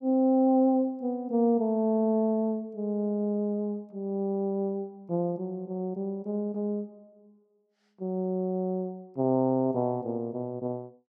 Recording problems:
none

